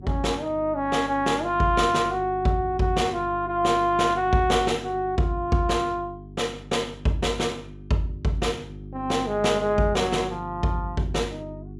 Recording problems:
hum; 50 Hz, harmonics up to 400 Hz, SNR 16 dB

